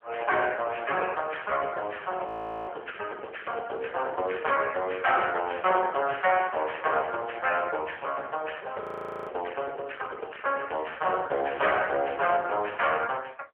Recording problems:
telephone audio; 340 Hz to 3.2 kHz, AMR-NB
distortion; hard clipping, signal-to-distortion ratio 12 dB
frozen audio; at 2.5 s and at 9 s

